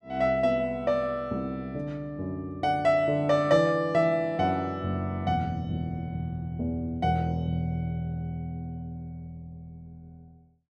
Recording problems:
none

